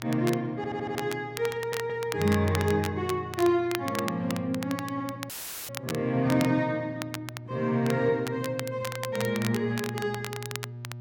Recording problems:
hum; 60 Hz, harmonics up to 600 Hz, SNR 15 dB
crackling; vinyl, SNR 11 dB
stutter; at 0.5 s and at 1.5 s
audio cutting out; at 5.5 s; filled with static

